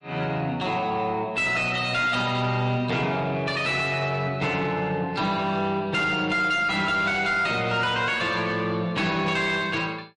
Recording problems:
lossy compression; MP3, log-spectral distance 2 dB, nothing above 10.4 kHz
distorted audio; soft clipping, signal-to-distortion ratio 10 dB

